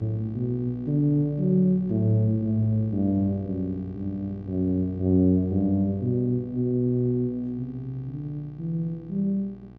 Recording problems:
hum; 60 Hz, harmonics up to 1.1 kHz, SNR 19 dB

